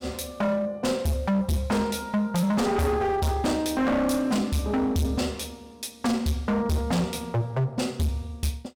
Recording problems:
distorted audio; hard clipping, uneven, signal-to-distortion ratio 7 dB

